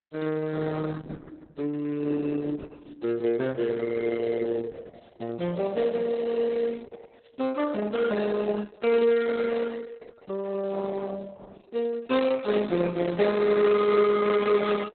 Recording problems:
lossy compression; Opus, then Opus, log-spectral distance 4 dB, nothing above 4 kHz

